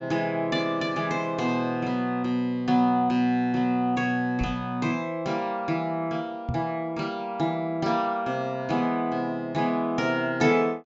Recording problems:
treble missing; nothing above 8 kHz
microphone bump; at 4.5 s and at 6.5 s; peak 0 dB vs average level

